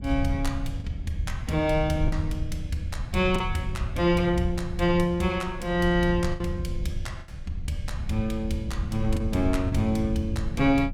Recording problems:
rumble; below 94 Hz, SNR 6 dB
lost packets; 3% of the sound replaced, filled with the last packet

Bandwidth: 17.5 kHz